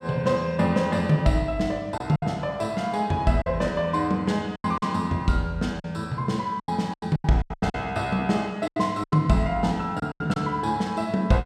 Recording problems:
lost packets; 9% of the sound replaced, filled with silence

